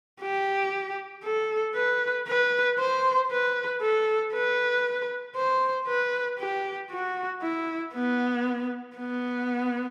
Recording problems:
none

